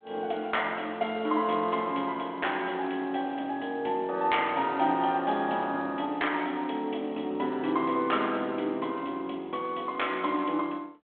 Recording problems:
phone line; 240 Hz to 3.5 kHz, G.726

